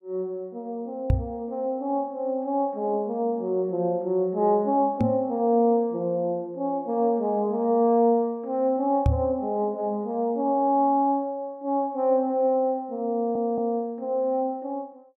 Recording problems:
knock on the microphone; at 1 s, at 5 s and at 9 s; peak +6 dB vs average level
stutter; at 13 s

